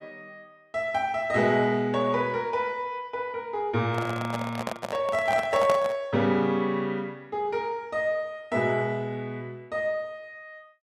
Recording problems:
microphone handling noise; from 4 to 6 s; peak +3 dB vs average level

